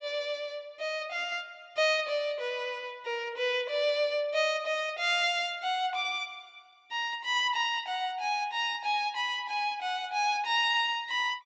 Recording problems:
treble cut off; nothing above 8 kHz

